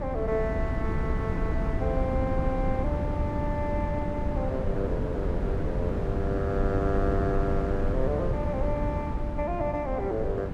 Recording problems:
hum; 60 Hz, harmonics up to 780 Hz, SNR 15 dB
wind noise; below 200 Hz, SNR -1 dB

